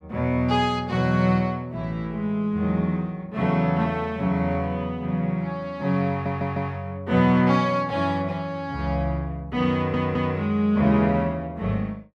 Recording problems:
stutter; at 6 s and at 9.5 s

